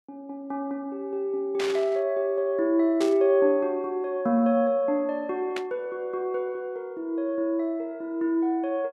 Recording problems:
burst of static; at 1.5 s, at 3 s and at 5.5 s; peak -4 dB vs average level

